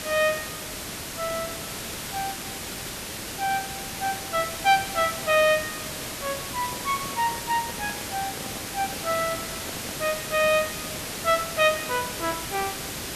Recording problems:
hiss; slope -2 dB per octave, SNR 5 dB
handling noise; from 6.5 to 10 s; peak -9 dB vs average level

